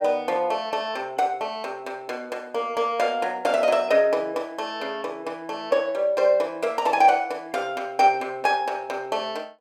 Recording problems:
none

